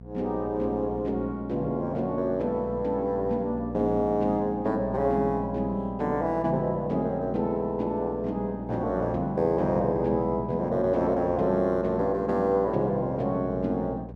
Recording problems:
hum; 60 Hz, harmonics up to 720 Hz, SNR 14 dB

